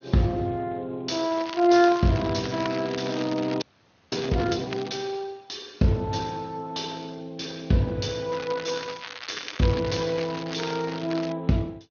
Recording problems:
treble cut off; nothing above 6.3 kHz
codec artefacts; Speex, log-spectral distance 9 dB
crackle; from 1.5 to 4.5 s, at 4.5 s and from 8.5 to 11 s; loose cable, SNR 11 dB
audio freezing; at 3.5 s for 0.5 s

